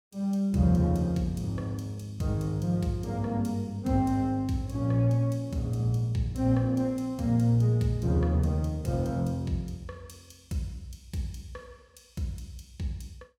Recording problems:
none

